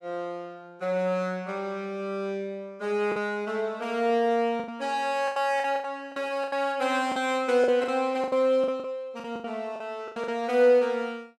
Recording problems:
packet loss; 9% of the sound replaced, filled with the last packet

